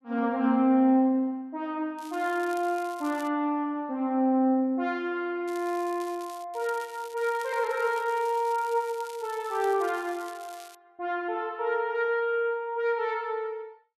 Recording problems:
crackling; from 2 to 3.5 s, at 5.5 s and from 6.5 to 11 s; loose cable, SNR 21 dB

